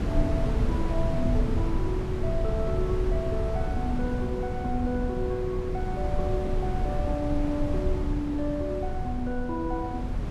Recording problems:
wind on the microphone; below 140 Hz, SNR -1 dB

